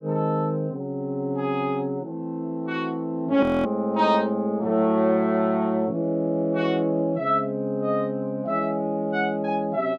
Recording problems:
frozen audio; at 3.5 s

